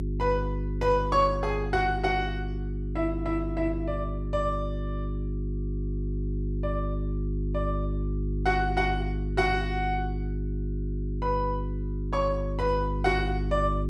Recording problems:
electrical hum; 50 Hz, harmonics up to 400 Hz, SNR 2 dB

